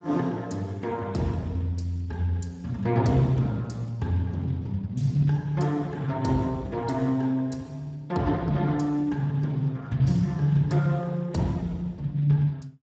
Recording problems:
lossy codec; Speex, log-spectral distance 2 dB

